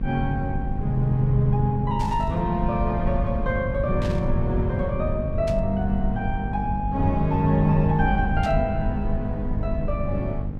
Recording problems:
hum; 50 Hz, harmonics up to 800 Hz, SNR 8 dB
low-frequency rumble; below 90 Hz, SNR 6 dB
burst of static; 4 times, first at 2 s; peak -9 dB vs average level

